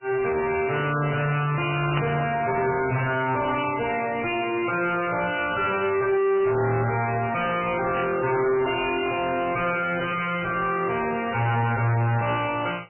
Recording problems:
lossy compression; MP3, log-spectral distance 6 dB, nothing above 2.4 kHz
distortion; soft clipping, signal-to-distortion ratio 6 dB
burst of static; at 2 s, at 3.5 s and at 8 s; peak -3 dB vs average level

